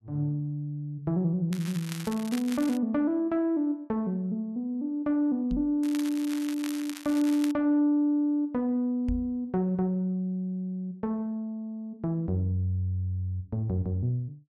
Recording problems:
crackling; from 1.5 to 3 s and from 6 to 7.5 s; loose cable, SNR 14 dB
knock on the microphone; at 5.5 s and at 9 s; peak 0 dB vs average level

